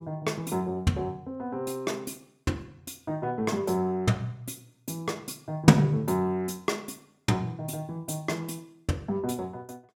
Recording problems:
none

